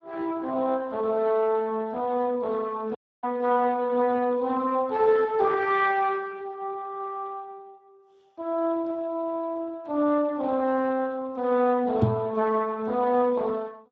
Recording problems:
lossy codec; Speex, log-spectral distance 2 dB
audio cutting out; at 3 s
microphone thump; at 12 s; peak +6 dB vs average level

